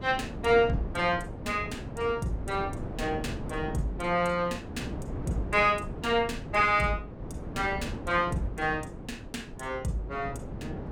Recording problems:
wind noise; below 360 Hz, SNR 10 dB

